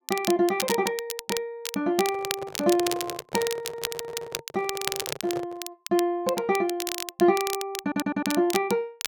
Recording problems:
crackling; vinyl, SNR 6 dB
handling noise; from 2 to 5.5 s; peak -4 dB vs average level
audio stuttering; at 3.5 s and at 8 s

